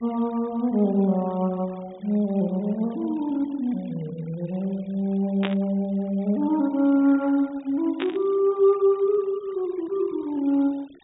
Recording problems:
treble cut off; nothing above 4 kHz
noise reduction artefacts; signal-to-artefact ratio 27 dB
burst of static; at 5.5 s and at 8 s; peak -2 dB vs average level

